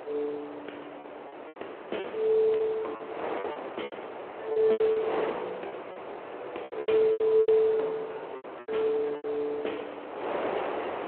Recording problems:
phone line; 320 Hz to 3.2 kHz, Speex
wind noise; below 1 kHz, SNR 10 dB
packet loss; 11% of the sound replaced, filled with repeated pitch periods
crackling; at 5 s; loose cable, SNR 27 dB

